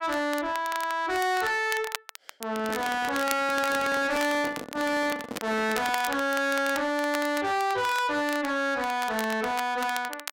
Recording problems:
distortion; soft clipping, signal-to-distortion ratio 6 dB
crackle; vinyl, SNR 12 dB
handling noise; from 2.5 to 6 s; peak -5 dB vs average level

